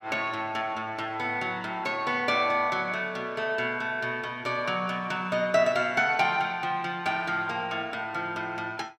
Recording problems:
none

